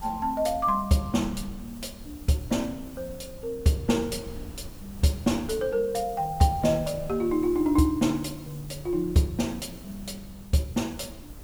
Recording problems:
background hiss; slope +1 dB per octave, SNR 24 dB
wind noise; below 130 Hz, SNR 18 dB

